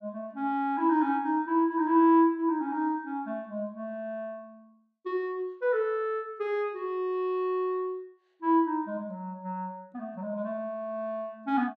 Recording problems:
none

